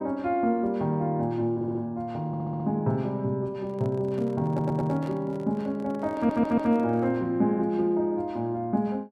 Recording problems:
audio stuttering; 4 times, first at 1.5 s
handling noise; from 3.5 to 7 s; peak -10 dB vs average level

